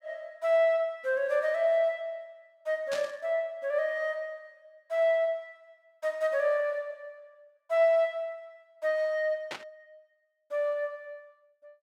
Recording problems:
burst of static; at 3 s and at 9.5 s; peak -5 dB vs average level

